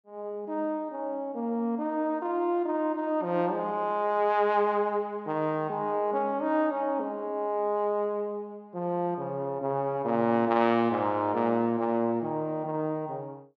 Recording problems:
none

